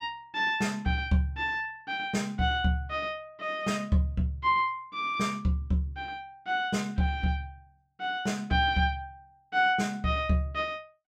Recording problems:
none

